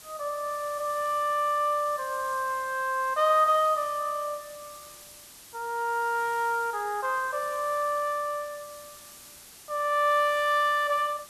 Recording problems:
background hiss; SNR 19 dB

